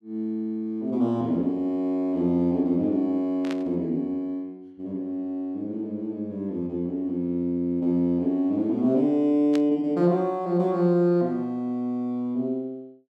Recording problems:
burst of static; at 3.5 s and at 9.5 s; peak -8 dB vs average level

